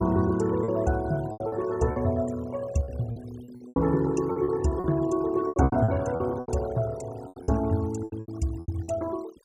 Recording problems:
noise reduction artefacts; signal-to-artefact ratio 18 dB
lost packets; 14% of the sound replaced, filled with repeated pitch periods

